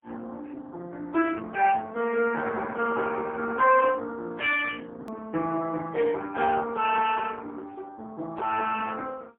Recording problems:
phone line; 240 Hz to 3.1 kHz, AMR-NB, then MP3
edit click; at 5 s

